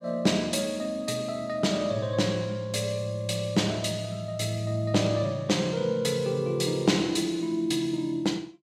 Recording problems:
none

